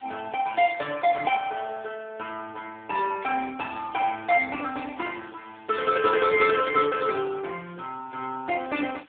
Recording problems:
telephone audio; 170 Hz to 3.1 kHz, AMR-NB
background hiss; SNR 29 dB
burst of static; at 3.5 s; peak -18 dB vs average level

